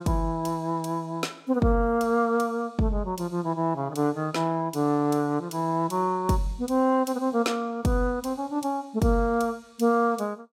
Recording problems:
none

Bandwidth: 16 kHz